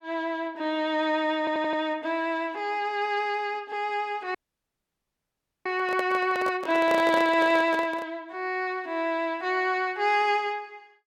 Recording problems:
stutter; at 1.5 s
audio cutting out; at 4.5 s for 1.5 s
handling noise; from 5.5 to 8 s; peak -1 dB vs average level

